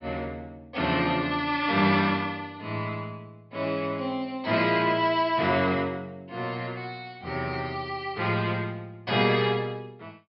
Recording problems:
treble cut off; nothing above 5.3 kHz

